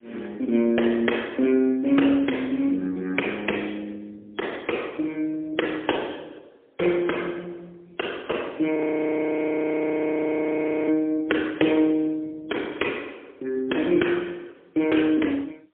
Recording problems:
phone line; 240 Hz to 3.4 kHz, AMR-NB, then MP3
audio freezing; at 9 s for 2 s

